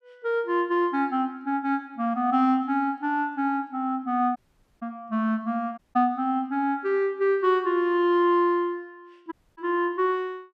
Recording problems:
audio cutting out; at 4.5 s, at 6 s and at 9.5 s

